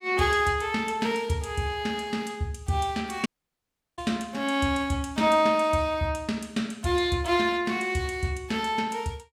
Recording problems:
audio cutting out; at 3.5 s for 0.5 s

